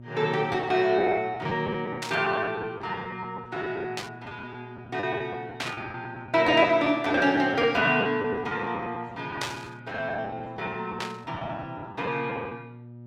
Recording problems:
electrical hum; 60 Hz, harmonics up to 600 Hz, SNR 20 dB
lost packets; 12% of the sound replaced, filled with the last packet
static burst; 5 times, first at 2 s; peak 0 dB vs average level

